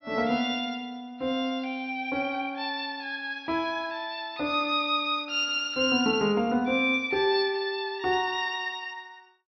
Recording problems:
treble cut off; nothing above 5.9 kHz

